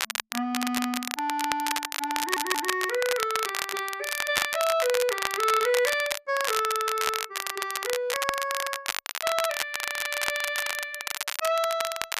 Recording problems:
crackling; vinyl, SNR 3 dB
audio stuttering; at 2 s

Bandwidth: 14.5 kHz